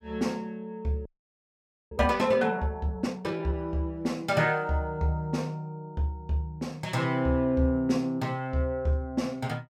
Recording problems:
audio freezing; at 1 s for 1 s

